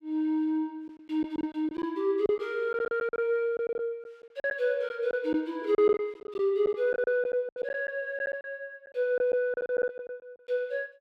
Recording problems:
lost packets; 11% of the sound replaced, filled with silence

